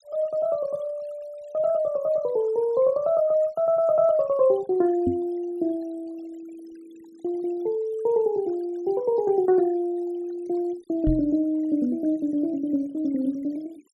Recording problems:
noise reduction artefacts; signal-to-artefact ratio 27 dB
microphone bump; at 5 s and at 11 s; peak +2 dB vs average level

